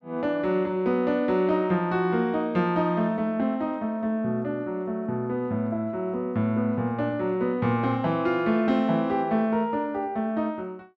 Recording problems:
none

